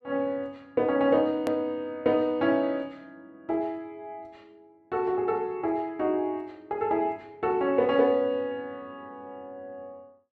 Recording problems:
click at an edit; at 1.5 s

